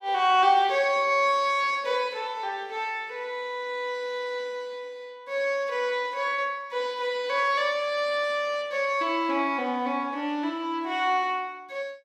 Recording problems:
none

